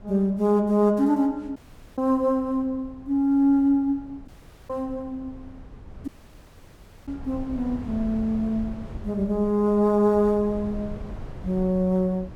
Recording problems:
wind noise; below 170 Hz, SNR 18 dB
audio cutting out; at 1.5 s, at 4.5 s and at 6 s for 1 s

